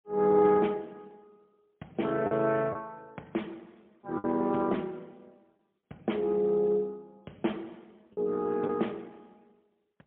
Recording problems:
phone line; 170 Hz to 3.6 kHz, AMR-NB, then MP3
packet loss; 3% of the sound replaced, filled with the last packet

